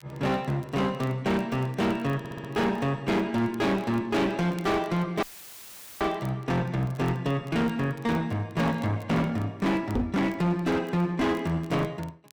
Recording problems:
distortion; hard clipping, uneven, signal-to-distortion ratio 7 dB
crackling; vinyl, SNR 29 dB
stutter; at 2 s
dropout; at 5 s for 1 s; filled with static
microphone thump; at 10 s; peak +4 dB vs average level

